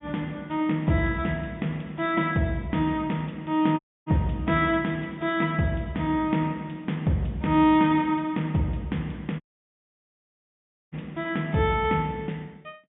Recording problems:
treble cut off; nothing above 3.5 kHz
audio cutting out; at 4 s and at 9.5 s for 1.5 s

